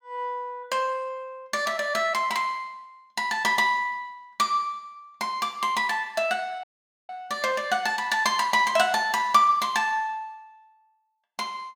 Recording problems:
audio cutting out; at 6.5 s

